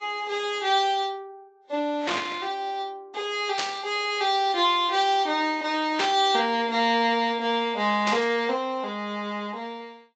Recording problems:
low-pass filter; nothing above 7.3 kHz
lossy codec; Vorbis, log-spectral distance 2 dB
static burst; 4 times, first at 2 s; peak 0 dB vs average level

